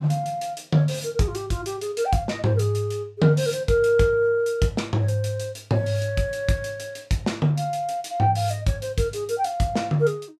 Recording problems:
none

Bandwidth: 15.5 kHz